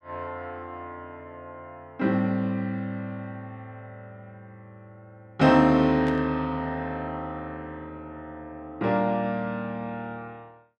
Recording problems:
static burst; at 6 s; peak -10 dB vs average level

